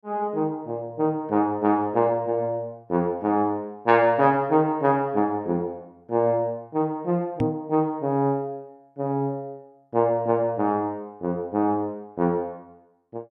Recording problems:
microphone bump; at 7.5 s; peak +2 dB vs average level

